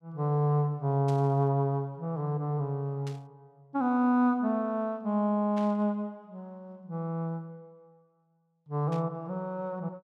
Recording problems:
burst of static; 4 times, first at 1 s; peak -14 dB vs average level

